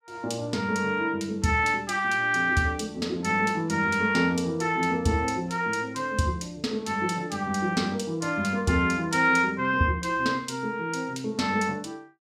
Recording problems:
none

